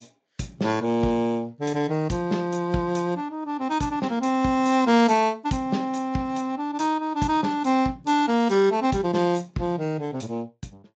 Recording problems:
lossy compression; MP3, then Speex, log-spectral distance 2 dB, nothing above 7.3 kHz

